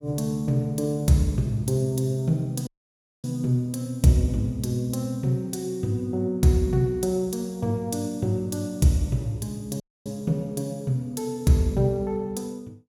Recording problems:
dropout; at 2.5 s for 0.5 s and at 10 s

